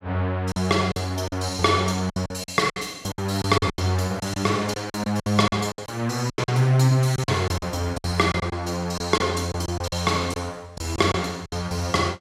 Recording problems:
packet loss; 12% of the sound replaced, filled with silence

